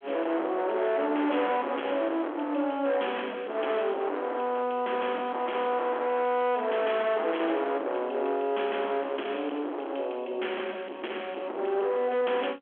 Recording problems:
phone line; 260 Hz to 3.4 kHz, G.726
distorted audio; hard clipping, signal-to-distortion ratio 7 dB

